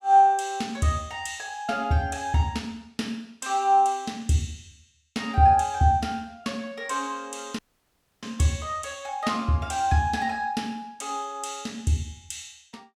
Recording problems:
audio cutting out; at 7.5 s for 0.5 s

